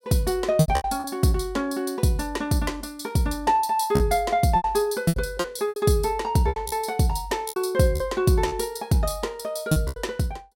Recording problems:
lost packets; 9% of the sound replaced, filled with repeated pitch periods

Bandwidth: 16.5 kHz